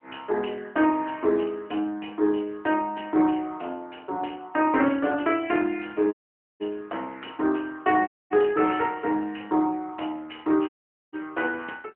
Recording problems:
phone line; 240 Hz to 3.2 kHz, AMR-NB
dropout; at 6 s, at 8 s and at 11 s

